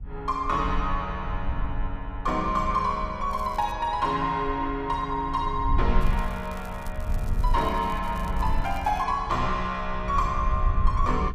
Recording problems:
rumble; below 64 Hz, SNR 5 dB
crackle; at 3.5 s and from 6 to 9 s; loose cable, SNR 24 dB

